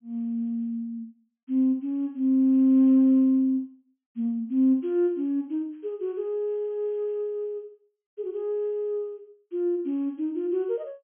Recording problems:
treble cut off; nothing above 3.3 kHz

